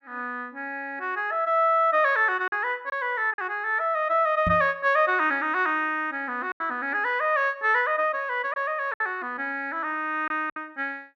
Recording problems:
lost packets; 3% of the sound replaced, filled with silence
microphone bump; at 4.5 s; peak 0 dB vs average level

